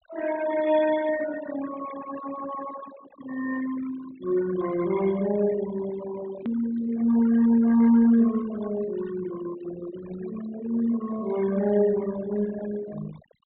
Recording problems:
treble missing; nothing above 4 kHz
denoising artefacts; signal-to-artefact ratio 15 dB
edit click; at 6.5 s

